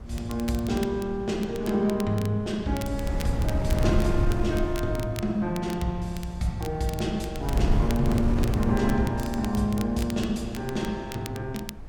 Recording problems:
wind on the microphone; below 120 Hz, SNR 2 dB
crackling; vinyl, SNR 16 dB

